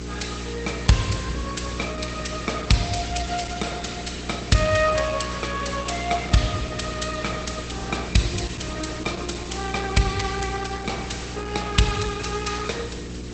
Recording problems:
codec artefacts; Opus, log-spectral distance 9 dB, nothing above 8.2 kHz
electrical hum; 60 Hz, harmonics up to 480 Hz, SNR 8 dB
background hiss; slope -1 dB per octave, SNR 15 dB

